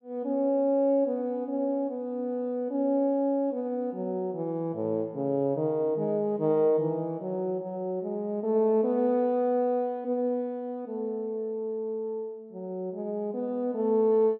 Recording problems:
none

